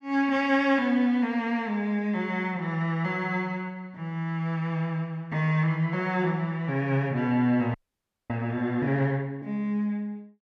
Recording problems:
audio freezing; at 7.5 s for 0.5 s

